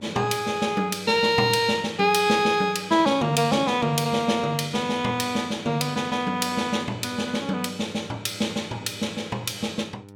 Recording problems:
hum; 50 Hz, harmonics up to 1.4 kHz, SNR 23 dB

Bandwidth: 17 kHz